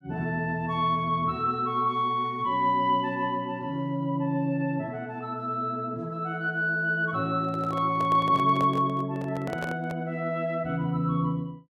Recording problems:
microphone handling noise; from 7.5 to 10 s; peak -4 dB vs average level

